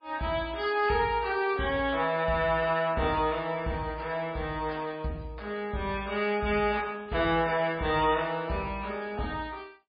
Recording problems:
lossy codec; MP3, log-spectral distance 3 dB, nothing above 4.6 kHz

